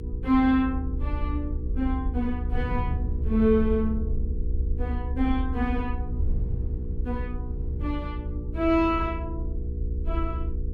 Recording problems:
hum; 60 Hz, harmonics up to 480 Hz, SNR 11 dB
rumble; below 70 Hz, SNR 5 dB
wind on the microphone; below 110 Hz, SNR 12 dB

